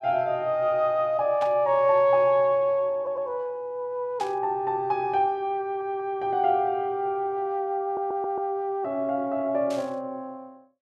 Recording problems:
static burst; at 1.5 s, at 4 s and at 9.5 s; peak -11 dB vs average level
audio stuttering; at 3 s, at 5.5 s and at 8 s

